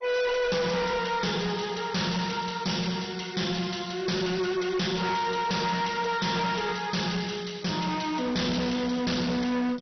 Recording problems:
codec artefacts; MP2, log-spectral distance 8 dB, nothing above 6 kHz
distortion; hard clipping, uneven, signal-to-distortion ratio 6 dB

